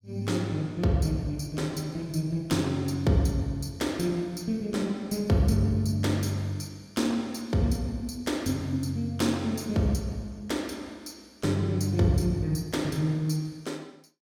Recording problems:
none

